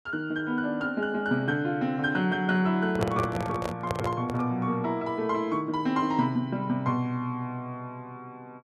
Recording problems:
handling noise; from 3 to 4.5 s; peak +2 dB vs average level

